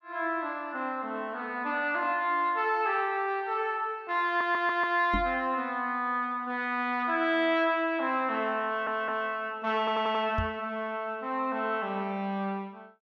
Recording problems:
audio stuttering; at 4.5 s, at 8.5 s and at 10 s
microphone bump; at 5 s and at 10 s; peak 0 dB vs average level

